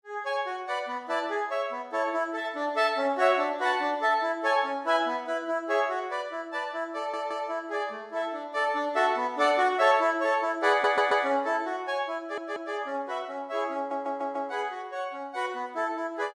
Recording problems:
audio stuttering; 4 times, first at 7 s

